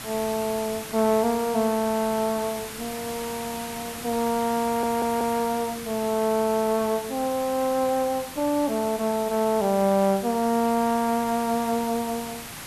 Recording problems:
hiss; slope -1 dB per octave, SNR 11 dB
audio stuttering; at 4.5 s

